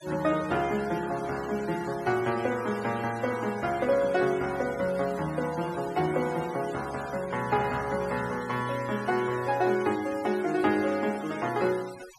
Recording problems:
denoising artefacts; signal-to-artefact ratio 16 dB

